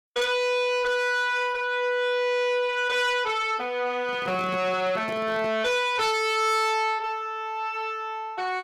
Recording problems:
distorted audio; soft clipping, signal-to-distortion ratio 11 dB
microphone handling noise; from 4 to 5.5 s; peak -8 dB vs average level

